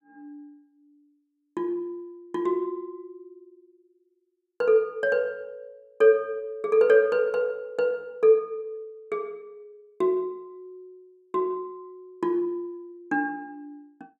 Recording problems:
none

